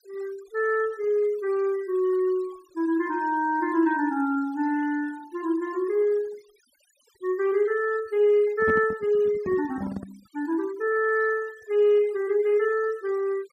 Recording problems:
denoising artefacts; signal-to-artefact ratio 25 dB
microphone handling noise; from 8.5 to 10 s; peak -2 dB vs average level

